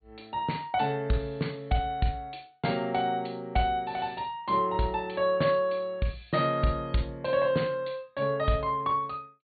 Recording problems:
treble cut off; nothing above 4.5 kHz

